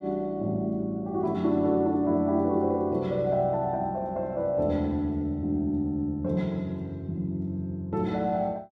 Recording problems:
none

